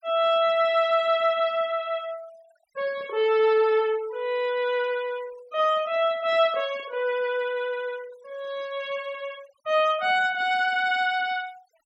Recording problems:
noise reduction artefacts; signal-to-artefact ratio 25 dB

